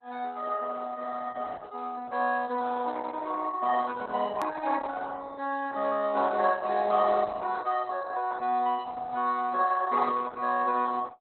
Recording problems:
codec artefacts; Opus, log-spectral distance 4 dB, nothing above 13.7 kHz
edit click; at 4.5 s

